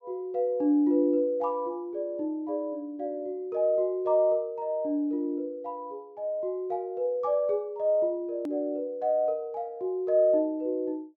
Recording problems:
treble missing; nothing above 8 kHz
hard cut with a click; at 8.5 s

